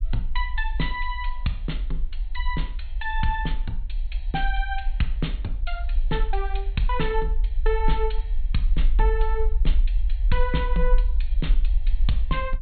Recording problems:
low-pass filter; nothing above 4.3 kHz
rumble; below 44 Hz, SNR -2 dB

